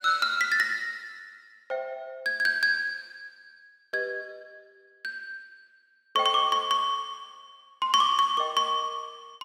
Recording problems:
none

